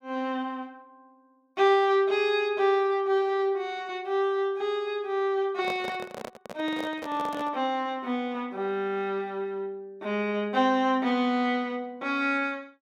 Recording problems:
microphone handling noise; from 5.5 to 7.5 s; peak -5 dB vs average level

